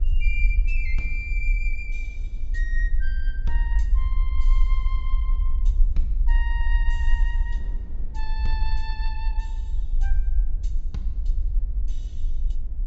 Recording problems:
low-pass filter; nothing above 8 kHz
rumble; below 46 Hz, SNR -9 dB
wind noise; below 200 Hz, SNR 14 dB

